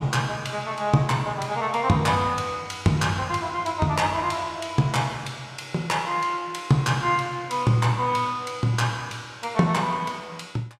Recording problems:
none

